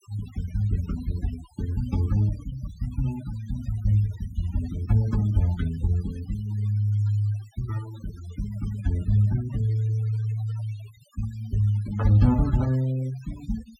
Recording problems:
denoising artefacts; signal-to-artefact ratio 21 dB

